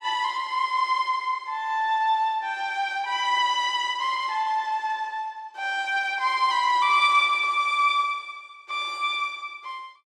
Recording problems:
none

